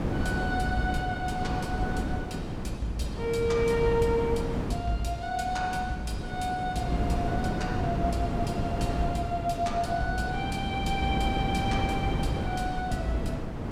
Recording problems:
electrical hum; 60 Hz, harmonics up to 720 Hz, SNR 18 dB
wind noise; below 370 Hz, SNR 1 dB

